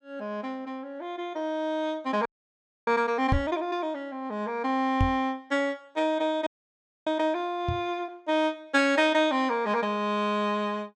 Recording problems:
frozen audio; at 2.5 s for 0.5 s and at 6.5 s for 0.5 s
knock on the microphone; at 3.5 s, at 5 s and at 7.5 s; peak +5 dB vs average level

